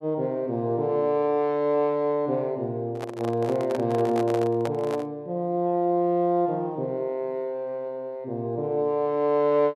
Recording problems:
microphone handling noise; from 3 to 5 s; peak -3 dB vs average level

